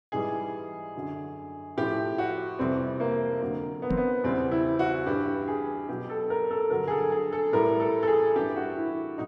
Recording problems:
microphone bump; at 4 s; peak +2 dB vs average level

